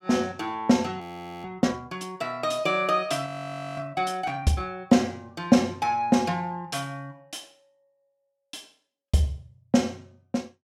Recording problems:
frozen audio; at 1 s and at 3.5 s for 0.5 s

